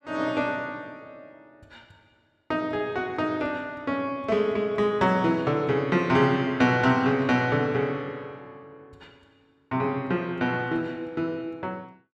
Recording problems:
none

